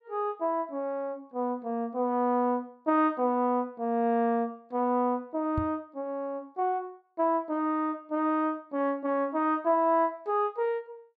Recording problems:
microphone bump; at 5.5 s; peak 0 dB vs average level

